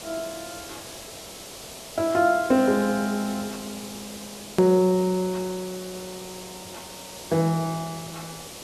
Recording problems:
hiss; SNR 14 dB
hard cut with a click; at 4.5 s

